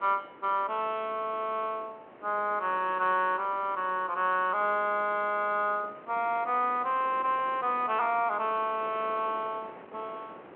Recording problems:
phone line; 300 Hz to 3.3 kHz, G.726
wind noise; below 1.2 kHz, SNR 20 dB

